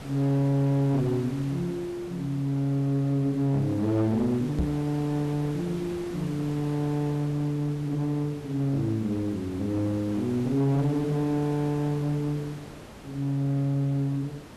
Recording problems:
distorted audio; hard clipping, uneven, signal-to-distortion ratio 10 dB
hiss; slope -6 dB per octave, SNR 15 dB
knock on the microphone; at 4.5 s; peak +4 dB vs average level

